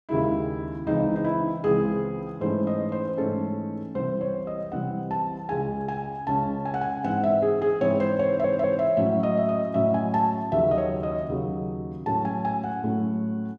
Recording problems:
stutter; at 8.5 s

